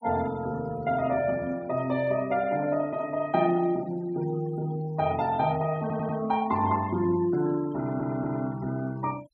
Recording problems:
denoising artefacts; signal-to-artefact ratio 21 dB
stutter; at 6 s and at 8 s

